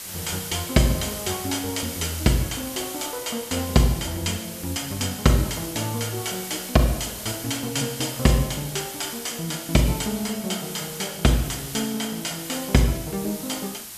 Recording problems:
background hiss; slope +1 dB per octave, SNR 9 dB

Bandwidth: 14.5 kHz